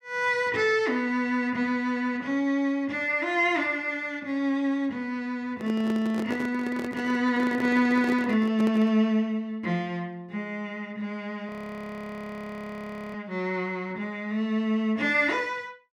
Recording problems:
microphone handling noise; from 5.5 to 9 s; peak -3 dB vs average level
frozen audio; at 11 s for 1.5 s

